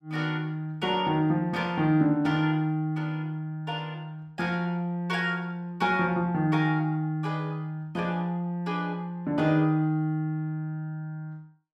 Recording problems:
none

